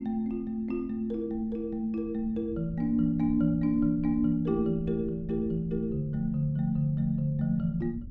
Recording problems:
rumble; below 130 Hz, SNR 16 dB

